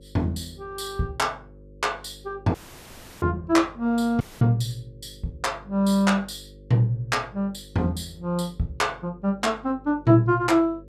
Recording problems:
hum; 50 Hz, harmonics up to 550 Hz, SNR 24 dB
dropout; at 2.5 s for 0.5 s and at 4 s

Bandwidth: 14.5 kHz